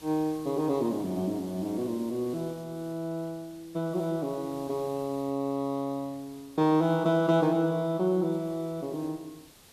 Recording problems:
background hiss; slope -2 dB per octave, SNR 23 dB

